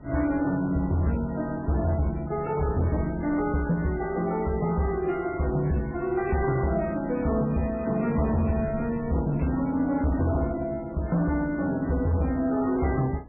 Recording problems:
codec artefacts; MP3, then MP3, log-spectral distance 3 dB, nothing above 2.4 kHz
distortion; hard clipping, signal-to-distortion ratio 11 dB
wind on the microphone; below 240 Hz, SNR 18 dB

